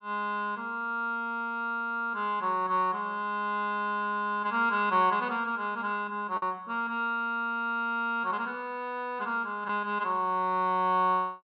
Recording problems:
treble cut off; nothing above 5.5 kHz
lost packets; 0.5% of the sound replaced, filled with the last packet

